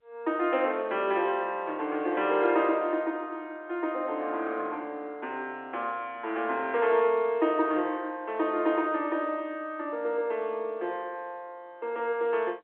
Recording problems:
phone line; 280 Hz to 3.4 kHz, G.711

